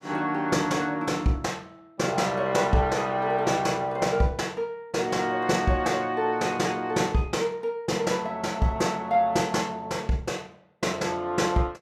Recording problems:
none

